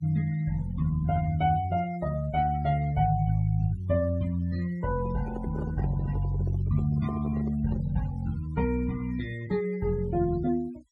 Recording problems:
noise reduction artefacts; signal-to-artefact ratio 20 dB
handling noise; from 5 to 8 s; peak -7 dB vs average level

